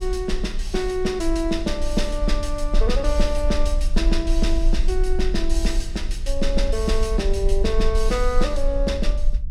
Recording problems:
low-frequency rumble; below 42 Hz, strongest tone 24 Hz, SNR 1 dB

